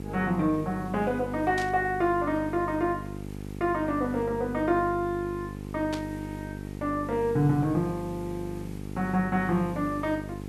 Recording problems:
hum; 50 Hz, harmonics up to 900 Hz, SNR 10 dB
hiss; SNR 25 dB
burst of static; at 1.5 s and at 6 s; peak -5 dB vs average level

